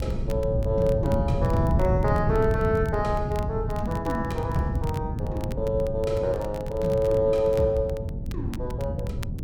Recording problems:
wind on the microphone; below 160 Hz, SNR 3 dB
crackling; vinyl, SNR 23 dB

